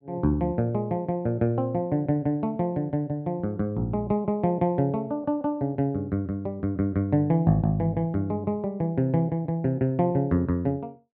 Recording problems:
none

